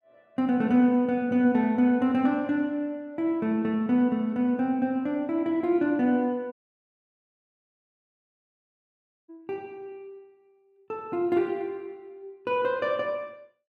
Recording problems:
audio cutting out; at 6.5 s for 3 s

